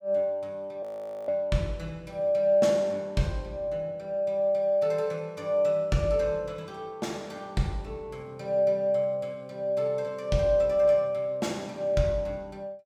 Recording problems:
frozen audio; at 1 s

